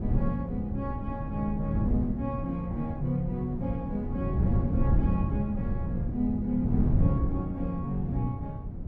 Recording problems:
wind on the microphone; below 150 Hz, SNR -1 dB

